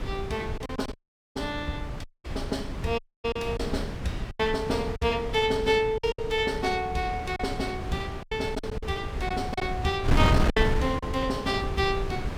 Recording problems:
wind noise; below 250 Hz, SNR 4 dB
packet loss; 7% of the sound replaced, filled with silence
audio cutting out; at 1 s, at 2 s and at 3 s

